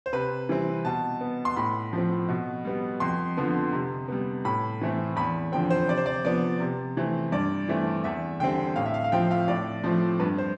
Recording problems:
none

